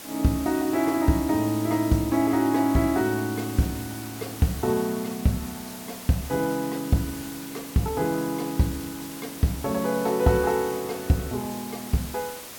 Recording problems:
hiss; slope -2 dB per octave, SNR 13 dB

